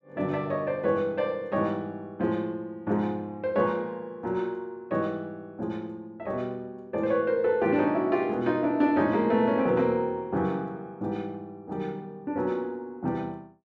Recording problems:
none

